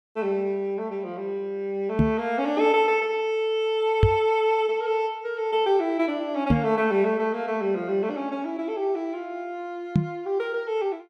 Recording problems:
microphone thump; 4 times, first at 2 s; peak +9 dB vs average level

